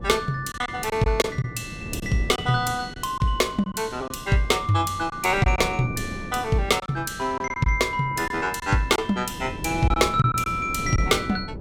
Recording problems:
wind noise; below 330 Hz, SNR 13 dB
packet loss; 6% of the sound replaced, filled with silence

